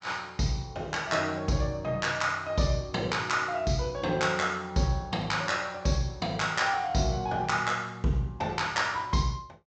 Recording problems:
low-pass filter; nothing above 8 kHz

